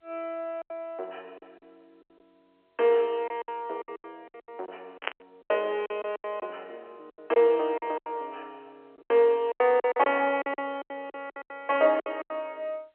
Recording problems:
phone line; 340 Hz to 3.4 kHz, G.711
lost packets; 15% of the sound replaced, filled with silence
static burst; at 5 s; peak +3 dB vs average level

